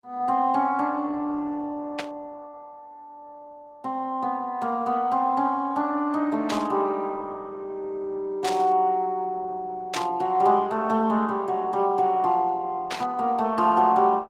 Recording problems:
lossy compression; Opus, log-spectral distance 2 dB
static burst; 5 times, first at 2 s; peak -2 dB vs average level

